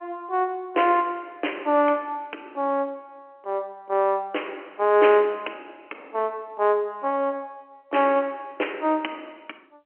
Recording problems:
telephone audio; 260 Hz to 3.2 kHz, G.711

